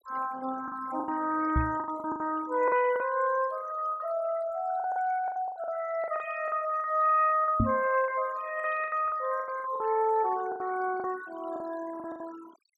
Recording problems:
noise reduction artefacts; signal-to-artefact ratio 18 dB
lost packets; 13% of the sound replaced, filled with the last packet
microphone bump; at 1.5 s and at 7.5 s; peak +6 dB vs average level

